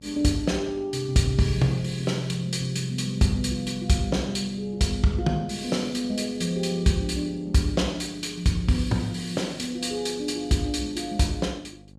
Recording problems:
hum; 50 Hz, harmonics up to 850 Hz, SNR 25 dB

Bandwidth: 14.5 kHz